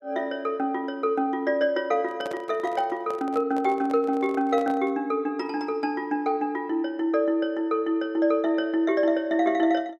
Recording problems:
handling noise; from 2 to 5 s; peak -7 dB vs average level

